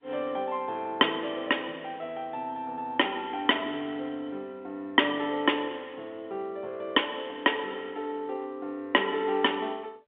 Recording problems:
phone line; 220 Hz to 3.6 kHz, G.711

